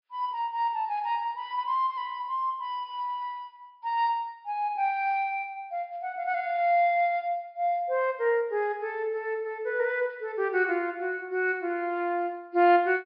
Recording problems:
low-pass filter; nothing above 5.5 kHz

